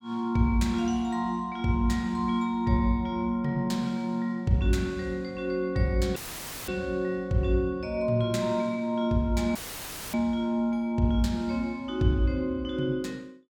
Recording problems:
dropout; at 6 s for 0.5 s and at 9.5 s for 0.5 s; filled with static

